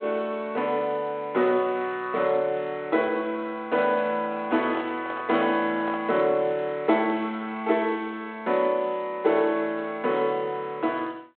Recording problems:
telephone audio; 220 Hz to 3.6 kHz, G.726
microphone handling noise; from 4.5 to 6 s; peak -5 dB vs average level

